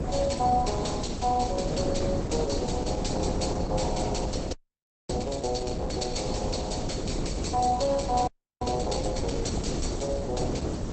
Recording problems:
lossy codec; Opus, log-spectral distance 9 dB, nothing above 8.2 kHz
electrical hum; 60 Hz, harmonics up to 780 Hz, SNR 18 dB
background hiss; slope 0 dB per octave, SNR 21 dB
wind on the microphone; below 410 Hz, SNR 3 dB
audio freezing; at 4.5 s for 0.5 s and at 8.5 s

